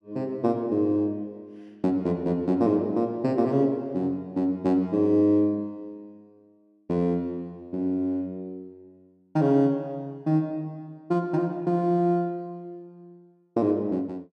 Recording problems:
none

